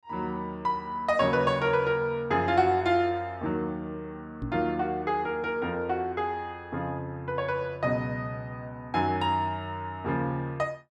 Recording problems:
knock on the microphone; at 4.5 s; peak -2 dB vs average level

